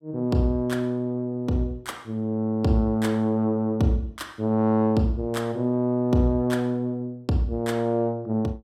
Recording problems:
none

